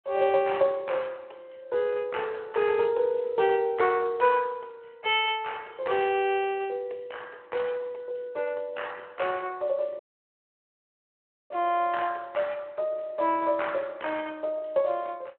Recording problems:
telephone audio; 320 Hz to 3.1 kHz, Speex
dropout; at 10 s for 1.5 s

